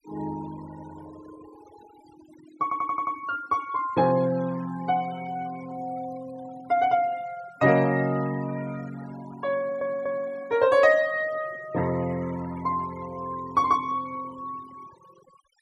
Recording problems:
denoising artefacts; signal-to-artefact ratio 20 dB
audio stuttering; at 2.5 s and at 9.5 s

